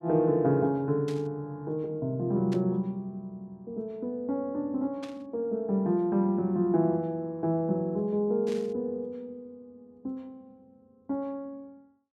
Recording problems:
static burst; 4 times, first at 1 s; peak -11 dB vs average level

